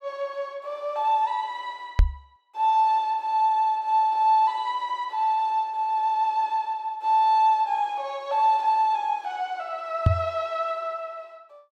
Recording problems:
microphone thump; at 2 s and at 10 s; peak +8 dB vs average level

